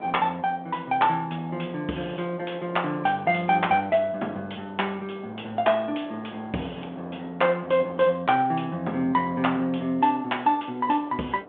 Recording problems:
telephone audio; 170 Hz to 3.5 kHz, G.726
wind on the microphone; below 800 Hz, SNR 19 dB

